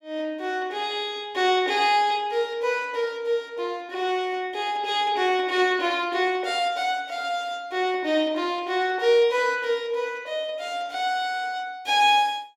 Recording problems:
none

